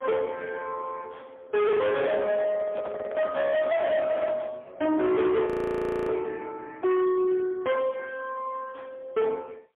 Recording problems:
phone line; 880 Hz to 2.2 kHz, AMR-NB, then MP3
distorted audio; hard clipping, signal-to-distortion ratio 6 dB
handling noise; from 2.5 to 4.5 s; peak -3 dB vs average level
audio freezing; at 5.5 s for 0.5 s

